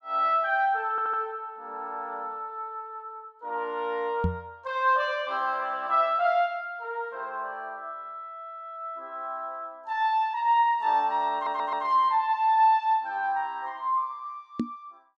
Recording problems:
stutter; at 1 s and at 11 s
microphone thump; at 4 s and at 15 s; peak +3 dB vs average level

